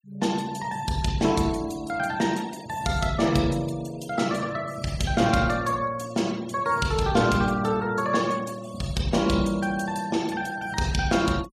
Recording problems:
noise reduction artefacts; signal-to-artefact ratio 20 dB

